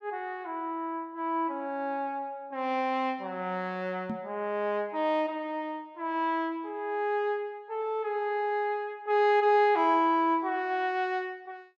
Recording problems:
microphone thump; at 4 s; peak -2 dB vs average level

